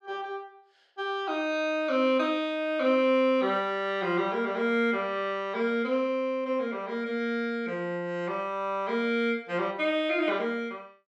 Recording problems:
none

